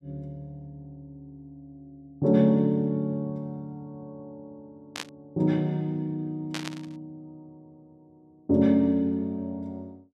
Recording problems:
static burst; at 5 s and at 6.5 s; peak -4 dB vs average level

